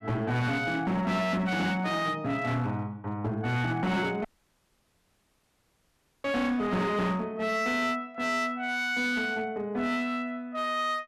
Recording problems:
distortion; hard clipping, uneven, signal-to-distortion ratio 10 dB
dropout; at 4.5 s for 2 s

